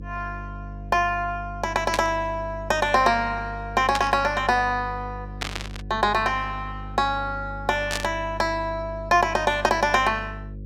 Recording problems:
hum; 50 Hz, harmonics up to 550 Hz, SNR 13 dB
burst of static; 4 times, first at 2 s; peak +1 dB vs average level

